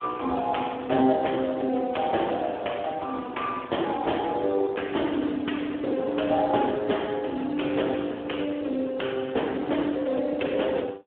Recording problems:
telephone audio; 220 Hz to 3.3 kHz, Speex

